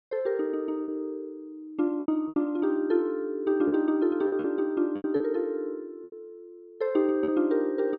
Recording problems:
lost packets; 7% of the sound replaced, filled with repeated pitch periods

